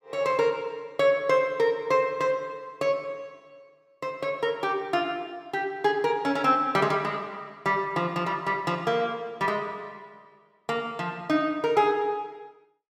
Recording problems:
none

